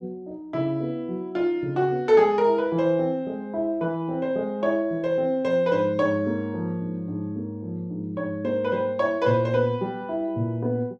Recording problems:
none

